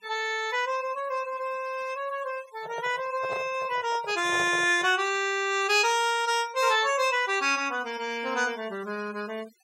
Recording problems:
noise reduction artefacts; signal-to-artefact ratio 21 dB
microphone handling noise; from 2.5 to 5 s; peak -6 dB vs average level

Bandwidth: 16.5 kHz